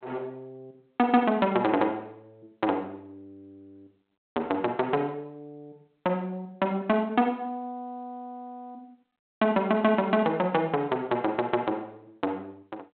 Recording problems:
telephone audio; 220 Hz to 3.7 kHz, G.726

